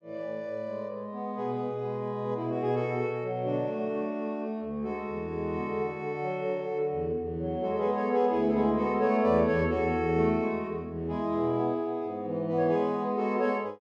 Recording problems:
none

